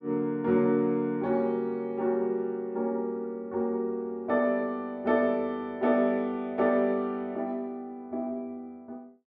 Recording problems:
none

